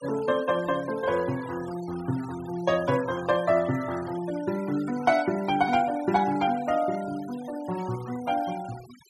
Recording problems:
noise reduction artefacts; signal-to-artefact ratio 18 dB

